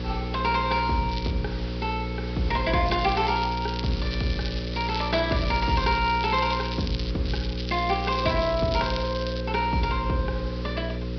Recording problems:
treble cut off; nothing above 5.5 kHz
electrical hum; 60 Hz, harmonics up to 540 Hz, SNR 5 dB
background hiss; slope -1 dB per octave, SNR 16 dB
crackle; at 1 s, from 3 to 7 s and from 7.5 to 9.5 s; loose cable, SNR 10 dB

